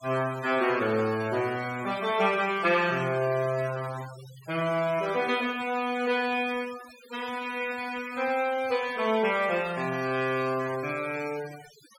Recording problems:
noise reduction artefacts; signal-to-artefact ratio 16 dB

